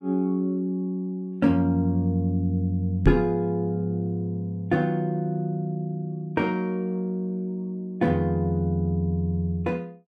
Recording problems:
microphone bump; at 3 s; peak +9 dB vs average level

